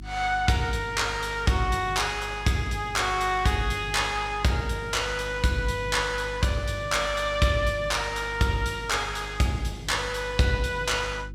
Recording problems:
hum; 50 Hz, harmonics up to 350 Hz, SNR 14 dB

